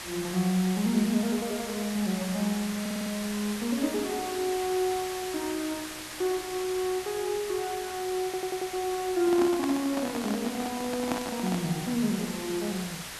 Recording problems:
hiss; slope 0 dB per octave, SNR 8 dB
audio stuttering; at 3 s and at 8.5 s
microphone handling noise; from 9 to 12 s; peak +2 dB vs average level

